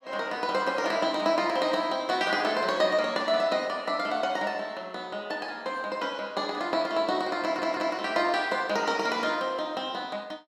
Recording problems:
stutter; at 7.5 s

